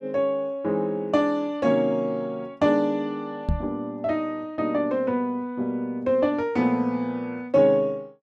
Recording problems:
microphone thump; at 3.5 s; peak +2 dB vs average level

